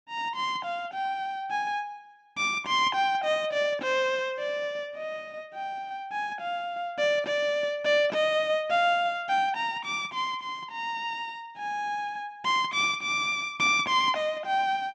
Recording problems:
none

